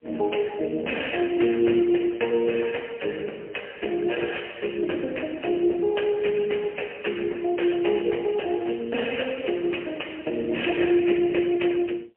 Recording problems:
phone line; 260 Hz to 3.1 kHz, AMR-NB, then MP3

